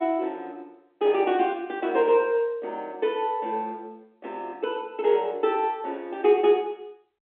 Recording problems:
phone line; 240 Hz to 3.6 kHz, G.711

